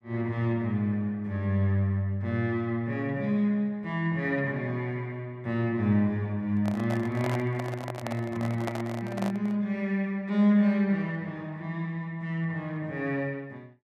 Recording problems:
microphone handling noise; from 6.5 to 9.5 s; peak -1 dB vs average level

